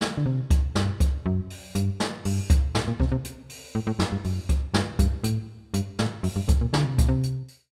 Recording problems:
none

